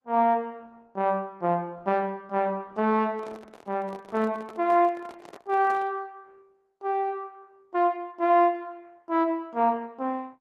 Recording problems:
lossy compression; Opus, log-spectral distance 2 dB
microphone handling noise; from 3 to 6 s; peak -12 dB vs average level

